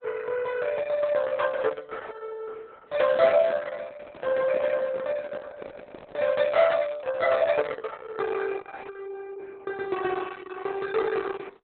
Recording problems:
codec artefacts; Opus, log-spectral distance 4 dB, nothing above 4 kHz
microphone handling noise; from 3 to 6.5 s; peak -3 dB vs average level

